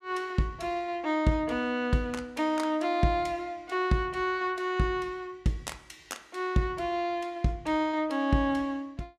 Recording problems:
none

